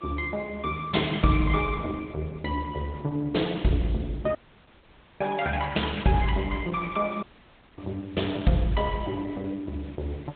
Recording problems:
low-pass filter; nothing above 3.9 kHz
lossy codec; Opus, log-spectral distance 5 dB
background hiss; SNR 27 dB
dropout; at 4.5 s for 1 s and at 7 s for 0.5 s

